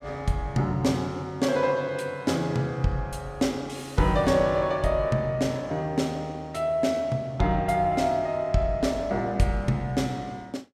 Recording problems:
none

